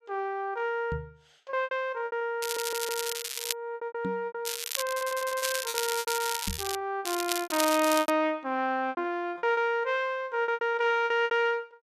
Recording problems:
lost packets; 14% of the sound replaced, filled with repeated pitch periods
microphone bump; at 1 s, at 4 s and at 6.5 s; peak -2 dB vs average level
stutter; at 2.5 s and at 5 s
crackle; from 2.5 to 3.5 s, from 4.5 to 7 s and from 7 to 8 s; loose cable, SNR 4 dB

